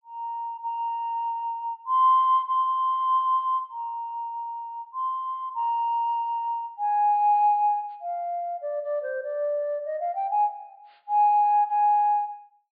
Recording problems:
treble cut off; nothing above 4.8 kHz

